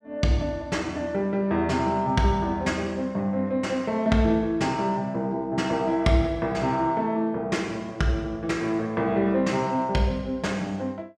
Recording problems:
none

